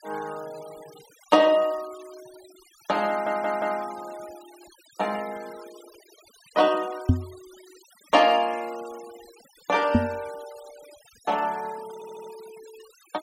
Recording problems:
denoising artefacts; signal-to-artefact ratio 22 dB
stutter; at 3 s and at 12 s
microphone thump; at 7 s and at 10 s; peak +9 dB vs average level

